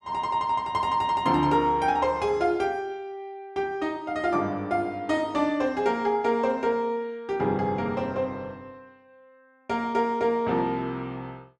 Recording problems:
none

